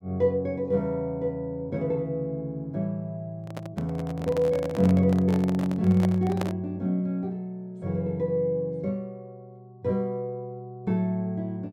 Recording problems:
microphone handling noise; from 3.5 to 6.5 s; peak 0 dB vs average level

